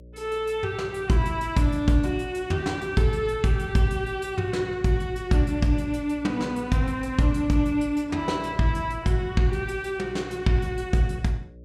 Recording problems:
hum; 60 Hz, harmonics up to 600 Hz, SNR 21 dB

